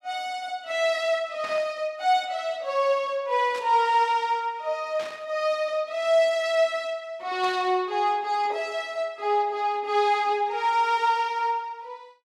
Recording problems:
static burst; 4 times, first at 1.5 s; peak -11 dB vs average level

